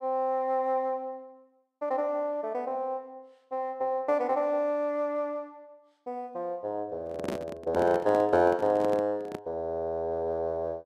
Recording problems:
handling noise; from 7 to 9.5 s; peak +1 dB vs average level

